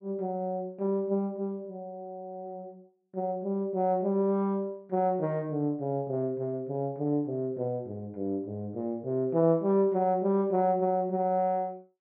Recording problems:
none

